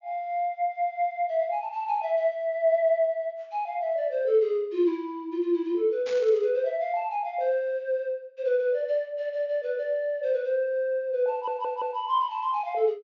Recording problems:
treble cut off; nothing above 7.2 kHz
static burst; at 6 s; peak -10 dB vs average level
stutter; at 11 s

